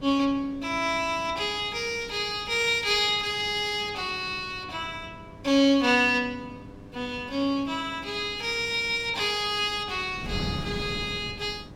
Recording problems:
electrical hum; 50 Hz, harmonics up to 1.7 kHz, SNR 24 dB
wind noise; below 280 Hz, SNR 17 dB

